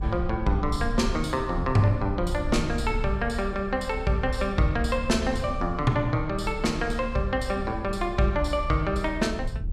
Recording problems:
rumble; below 70 Hz, strongest tone 34 Hz, SNR 9 dB

